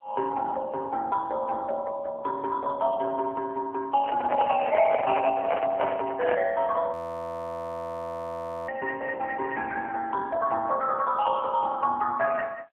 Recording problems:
phone line; 340 Hz to 2.6 kHz, AMR-NB
microphone handling noise; from 4 to 6.5 s; peak +1 dB vs average level
audio freezing; at 7 s for 2 s

